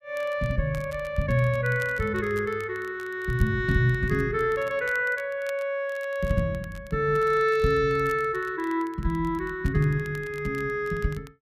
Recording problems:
crackle; vinyl, SNR 25 dB

